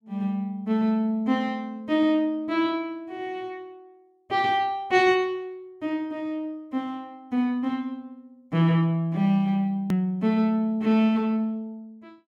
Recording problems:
hard cut with a click; at 10 s

